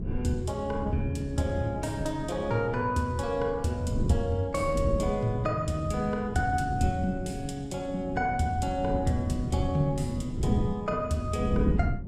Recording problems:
wind on the microphone; below 210 Hz, SNR 5 dB

